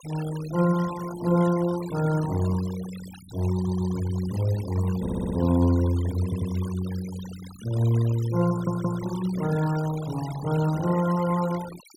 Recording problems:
noise reduction artefacts; signal-to-artefact ratio 16 dB
audio stuttering; 4 times, first at 3.5 s

